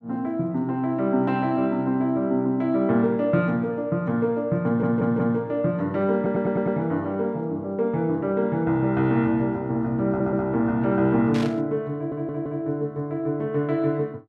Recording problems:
audio stuttering; 4 times, first at 4.5 s
static burst; at 11 s; peak -7 dB vs average level

